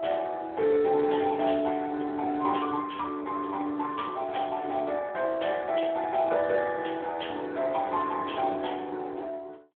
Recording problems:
telephone audio; 300 Hz to 3.3 kHz, Speex

